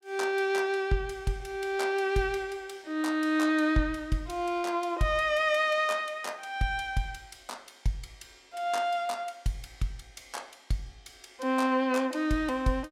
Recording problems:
none

